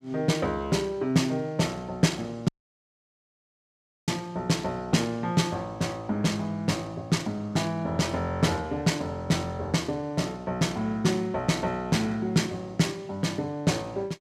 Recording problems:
dropout; at 2.5 s for 1.5 s

